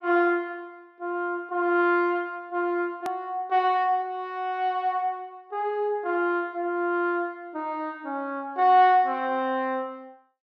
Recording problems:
hard cut with a click; at 3 s

